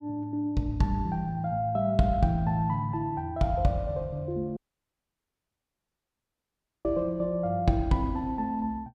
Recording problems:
dropout; at 4.5 s for 2.5 s

